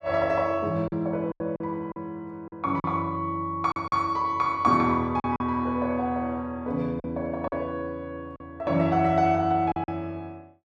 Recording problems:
lost packets; 6% of the sound replaced, filled with silence

